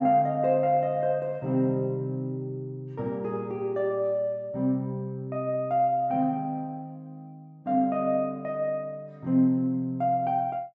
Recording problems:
treble missing; nothing above 8 kHz

